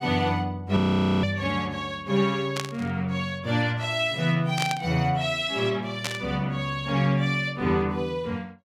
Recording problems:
frozen audio; at 1 s
static burst; at 2.5 s, at 4.5 s and at 6 s; peak +1 dB vs average level

